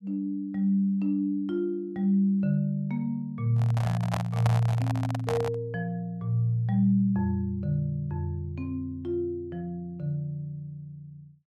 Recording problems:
microphone handling noise; from 3.5 to 5.5 s; peak 0 dB vs average level

